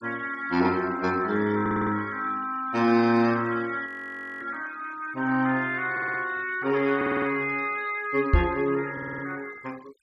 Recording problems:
noise reduction artefacts; signal-to-artefact ratio 22 dB
stutter; 4 times, first at 1.5 s
audio freezing; at 4 s for 0.5 s
microphone thump; at 8.5 s; peak +9 dB vs average level

